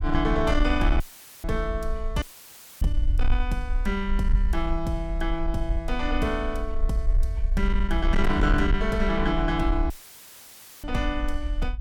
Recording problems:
distortion; soft clipping, signal-to-distortion ratio 12 dB
low-frequency rumble; below 52 Hz, SNR 2 dB
audio cutting out; at 1 s, at 2 s for 0.5 s and at 10 s for 1 s; filled with static

